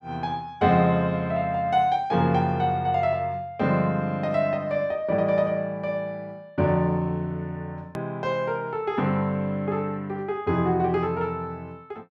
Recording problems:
click at an edit; at 8 s

